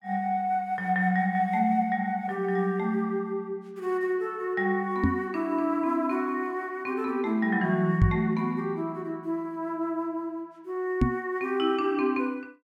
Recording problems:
knock on the microphone; at 5 s, at 8 s and at 11 s; peak +9 dB vs average level

